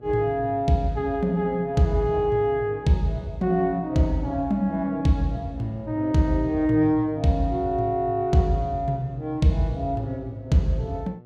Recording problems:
electrical hum; 60 Hz, harmonics up to 840 Hz, SNR 26 dB

